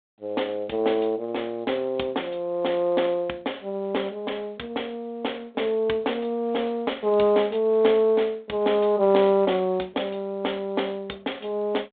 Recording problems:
telephone audio; 220 Hz to 3.7 kHz, G.726

